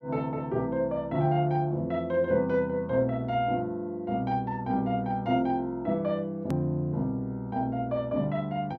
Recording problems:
click at an edit; at 6.5 s

